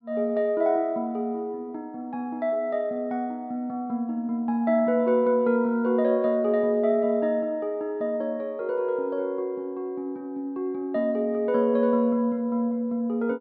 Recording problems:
treble cut off; nothing above 5.2 kHz

